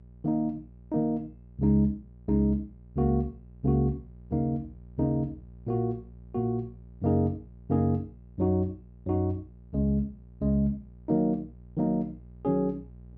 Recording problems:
hum; 60 Hz, harmonics up to 420 Hz, SNR 21 dB

